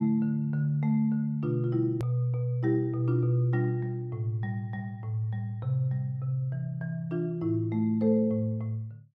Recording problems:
hard cut with a click; at 2 s

